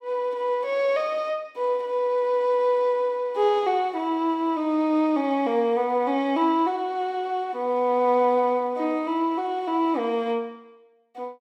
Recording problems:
none

